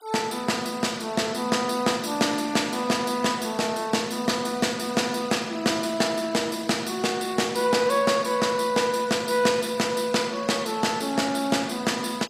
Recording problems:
noise reduction artefacts; signal-to-artefact ratio 20 dB

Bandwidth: 15.5 kHz